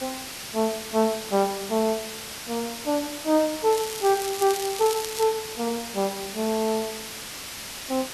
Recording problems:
background hiss; slope 0 dB per octave, SNR 8 dB
crackle; from 3.5 to 5 s; loose cable, SNR 9 dB

